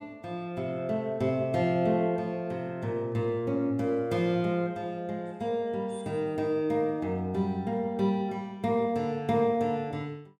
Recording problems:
none

